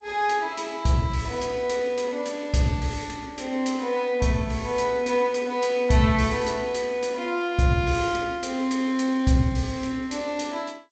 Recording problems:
lossy codec; G.722, log-spectral distance 2 dB, nothing above 7.6 kHz

